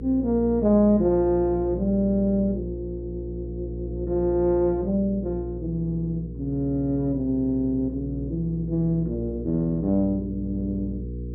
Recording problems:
hum; 60 Hz, harmonics up to 480 Hz, SNR 10 dB

